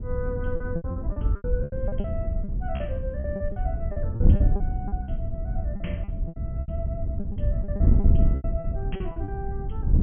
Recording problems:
low-pass filter; nothing above 3.3 kHz
wind on the microphone; below 92 Hz, SNR -8 dB
lost packets; 16% of the sound replaced, filled with repeated pitch periods

